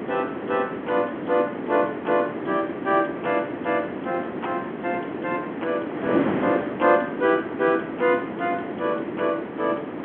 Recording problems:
telephone audio; 240 Hz to 3.4 kHz, G.711
wind noise; below 620 Hz, SNR 5 dB

